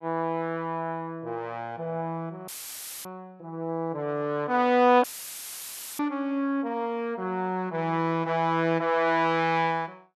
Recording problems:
dropout; at 2.5 s for 0.5 s and at 5 s for 1 s; filled with static

